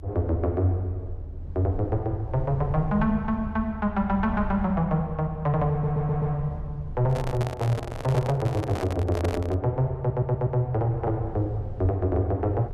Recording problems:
rumble; below 82 Hz, SNR 12 dB
stutter; at 5.5 s and at 10 s
microphone handling noise; from 7 to 9.5 s; peak -2 dB vs average level

